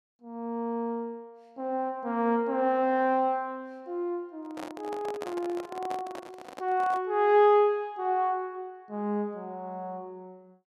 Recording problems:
handling noise; from 4.5 to 7 s; peak -6 dB vs average level

